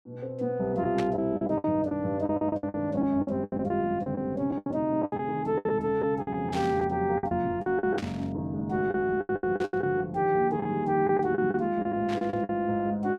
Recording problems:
packet loss; 14% of the sound replaced, filled with the last packet
static burst; 5 times, first at 1 s; peak -5 dB vs average level

